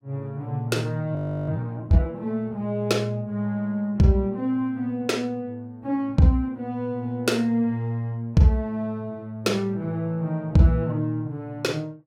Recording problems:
audio freezing; at 1 s

